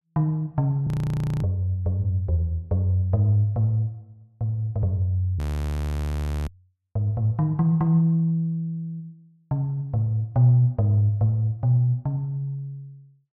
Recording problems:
audio freezing; at 1 s for 0.5 s and at 5.5 s for 1 s

